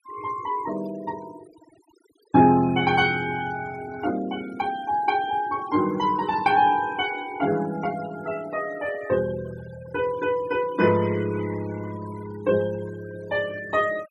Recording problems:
noise reduction artefacts; signal-to-artefact ratio 18 dB

